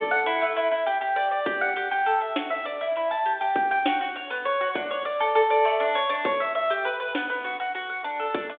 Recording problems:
telephone audio; 260 Hz to 3.6 kHz, G.726

